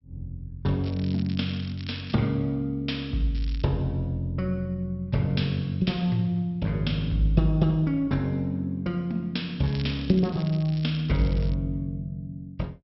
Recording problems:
low-pass filter; nothing above 5.6 kHz
crackle; from 1 to 2 s, at 3.5 s and from 9.5 to 12 s; loose cable, SNR 19 dB

